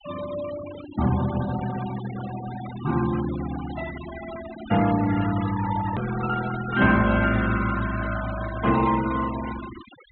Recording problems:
low-pass filter; nothing above 4 kHz
noise reduction artefacts; signal-to-artefact ratio 12 dB
edit click; at 6 s

